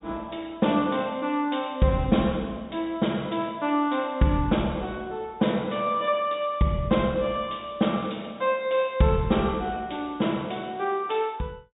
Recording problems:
treble cut off; nothing above 4 kHz

